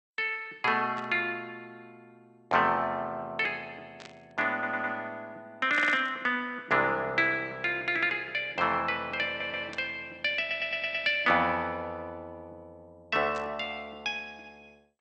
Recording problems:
lossy codec; MP2, log-spectral distance 2 dB
burst of static; 5 times, first at 1 s; peak -12 dB vs average level
audio stuttering; 4 times, first at 4.5 s

